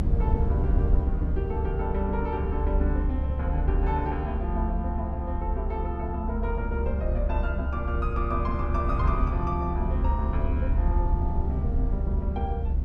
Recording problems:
rumble; below 72 Hz, SNR -4 dB

